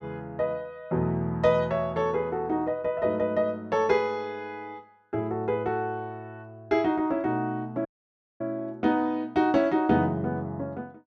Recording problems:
dropout; at 8 s for 0.5 s

